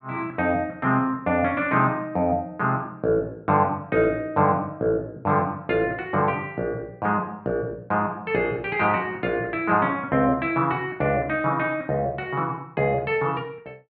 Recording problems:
none

